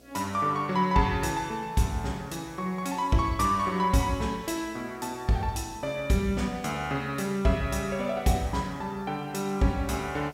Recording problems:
electrical hum; 60 Hz, harmonics up to 720 Hz, SNR 28 dB
hiss; slope +2 dB per octave, SNR 30 dB

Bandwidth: 16 kHz